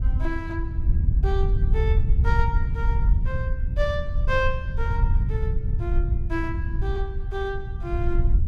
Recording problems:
rumble; below 80 Hz, SNR -6 dB

